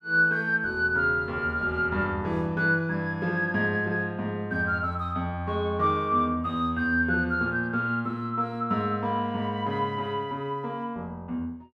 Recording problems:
none

